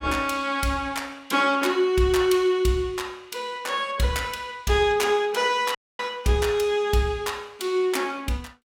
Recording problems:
audio cutting out; at 6 s

